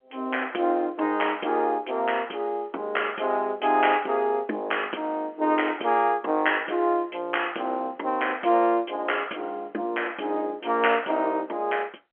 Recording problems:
phone line; 240 Hz to 3.3 kHz, G.711

